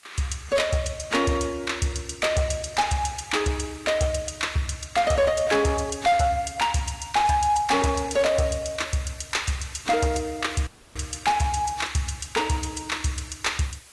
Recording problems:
codec artefacts; AAC, log-spectral distance 6 dB
distortion; hard clipping, uneven, signal-to-distortion ratio 12 dB
hiss; slope 0 dB per octave, SNR 25 dB
dropout; at 11 s

